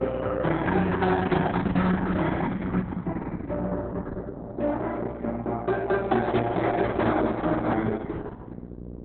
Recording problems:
codec artefacts; Opus, log-spectral distance 3 dB, nothing above 3.9 kHz
hum; 60 Hz, harmonics up to 660 Hz, SNR 13 dB

